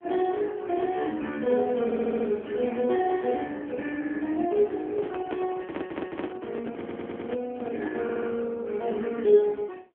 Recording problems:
phone line; 220 Hz to 3.3 kHz, AMR-NB
audio stuttering; 4 times, first at 2 s
handling noise; from 5 to 8.5 s; peak -2 dB vs average level

